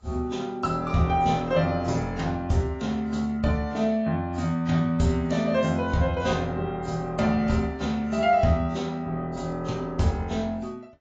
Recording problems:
lossy codec; AAC, log-spectral distance 2 dB, nothing above 7.3 kHz

